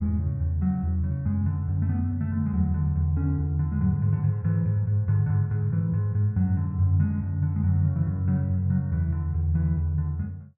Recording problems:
none

